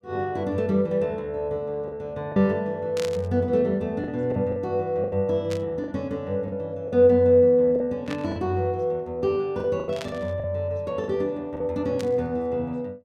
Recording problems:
lost packets; 6% of the sound replaced, filled with the last packet
burst of static; 5 times, first at 3 s; peak -6 dB vs average level

